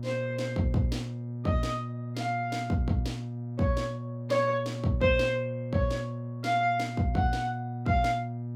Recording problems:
hum; 60 Hz, harmonics up to 600 Hz, SNR 7 dB

